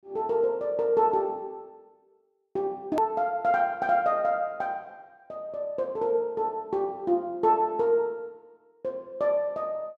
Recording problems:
click at an edit; at 3 s

